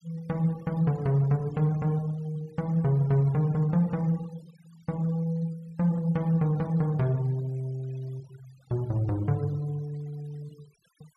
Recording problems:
denoising artefacts; signal-to-artefact ratio 27 dB

